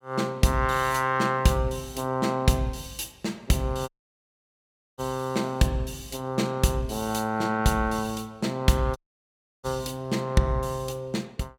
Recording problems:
audio cutting out; at 4 s for 1 s and at 9 s for 0.5 s

